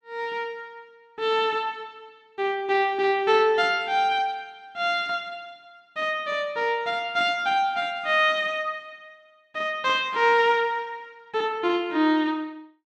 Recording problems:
none

